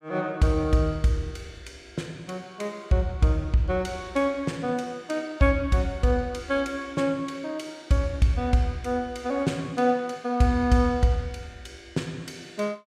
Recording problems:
none

